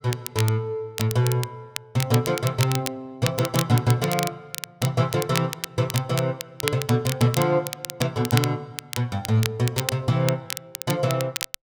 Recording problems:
crackle; vinyl, SNR 8 dB

